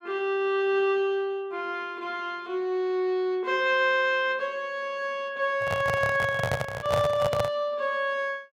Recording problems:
handling noise; from 5.5 to 7.5 s; peak +2 dB vs average level

